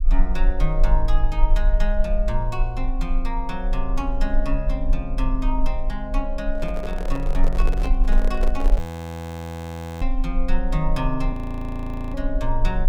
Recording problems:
rumble; below 36 Hz, strongest tone 26 Hz, SNR -3 dB
handling noise; from 6.5 to 9 s; peak +2 dB vs average level
audio freezing; at 9 s for 1 s and at 11 s for 1 s

